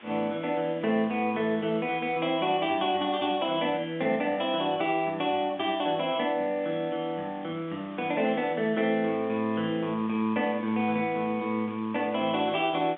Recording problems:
telephone audio; 130 Hz to 3.6 kHz, G.711
background hiss; SNR 23 dB

